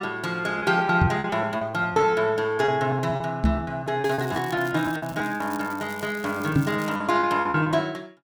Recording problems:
packet loss; 12% of the sound replaced, filled with repeated pitch periods
microphone bump; at 1 s, at 3.5 s and at 6.5 s; peak +7 dB vs average level
crackle; from 4 to 7 s; loose cable, SNR 20 dB

